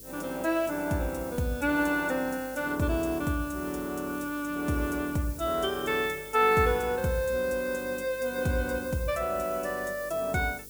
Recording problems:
hum; 50 Hz, harmonics up to 500 Hz, SNR 24 dB
background hiss; SNR 16 dB

